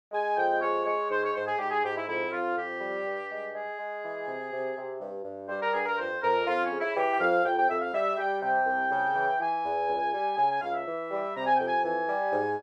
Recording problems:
none

